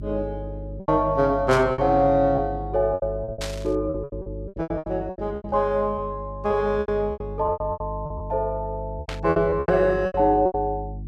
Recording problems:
hum; 50 Hz, harmonics up to 350 Hz, SNR 12 dB
lost packets; 16% of the sound replaced, filled with repeated pitch periods
burst of static; at 1.5 s, at 3.5 s and at 9 s; peak -4 dB vs average level

